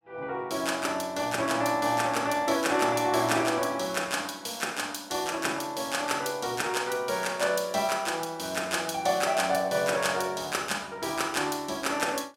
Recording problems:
none

